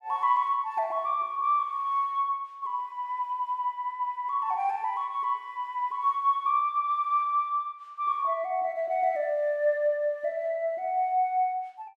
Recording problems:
none

